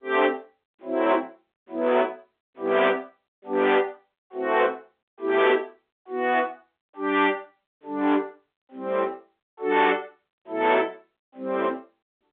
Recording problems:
telephone audio; 260 Hz to 3.9 kHz, G.711
distorted audio; hard clipping, signal-to-distortion ratio 13 dB

